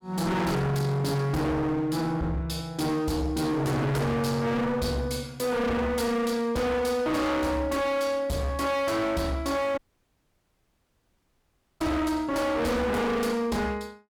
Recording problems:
distorted audio; hard clipping, signal-to-distortion ratio 6 dB
dropout; at 10 s for 2 s

